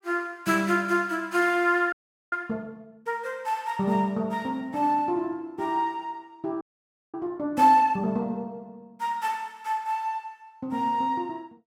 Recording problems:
audio freezing; at 2 s and at 6.5 s for 0.5 s

